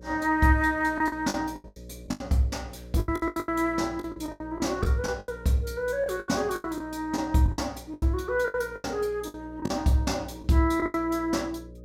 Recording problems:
hum; 60 Hz, harmonics up to 600 Hz, SNR 18 dB
lost packets; 15% of the sound replaced, filled with the last packet

